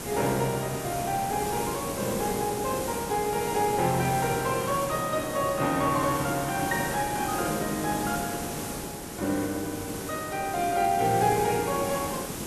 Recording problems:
hiss; SNR 6 dB

